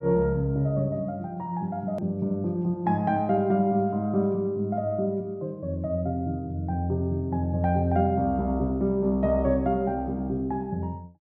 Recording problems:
edit click; at 2 s

